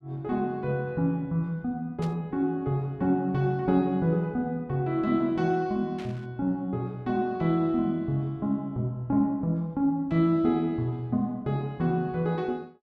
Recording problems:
static burst; at 2 s and at 6 s; peak -13 dB vs average level

